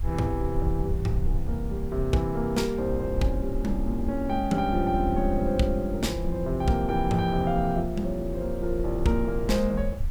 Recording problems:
background hiss; SNR 26 dB
low-frequency rumble; below 68 Hz, SNR 6 dB

